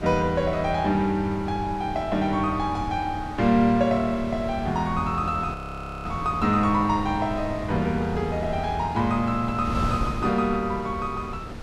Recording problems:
wind noise; below 330 Hz, SNR 11 dB
audio freezing; at 5.5 s for 0.5 s

